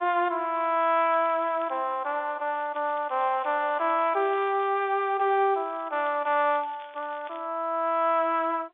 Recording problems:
phone line; 340 Hz to 3.6 kHz, G.711
crackle; from 0.5 to 2 s, from 2.5 to 4.5 s and from 5.5 to 7.5 s; loose cable, SNR 28 dB

